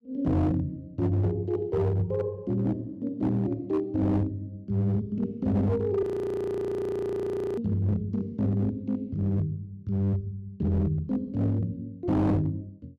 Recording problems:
distorted audio; hard clipping, uneven, signal-to-distortion ratio 11 dB
audio freezing; at 6 s for 1.5 s

